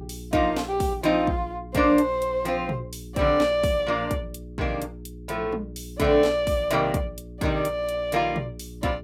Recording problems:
electrical hum; 60 Hz, harmonics up to 420 Hz, SNR 16 dB

